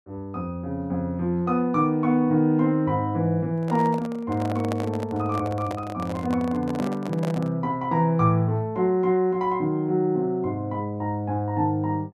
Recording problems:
microphone handling noise; from 3.5 to 7.5 s; peak -2 dB vs average level

